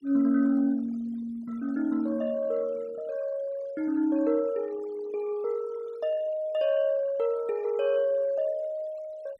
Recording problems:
denoising artefacts; signal-to-artefact ratio 23 dB

